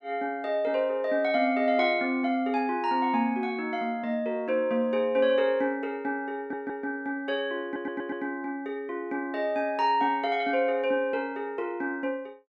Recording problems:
stutter; at 6.5 s and at 7.5 s

